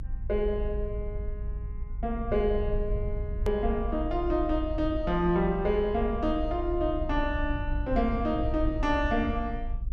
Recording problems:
low-frequency rumble; below 62 Hz, strongest tone 28 Hz, SNR 5 dB
edit click; at 3.5 s

